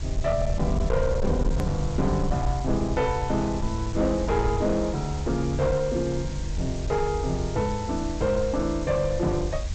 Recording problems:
codec artefacts; G.722, log-spectral distance 8 dB
distortion; hard clipping, uneven, signal-to-distortion ratio 12 dB
background hiss; SNR 16 dB
low-frequency rumble; below 76 Hz, SNR 6 dB
click at an edit; at 1.5 s

